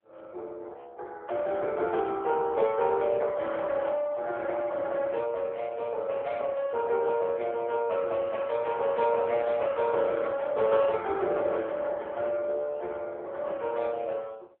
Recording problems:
telephone audio; 370 Hz to 3.6 kHz, AMR-NB

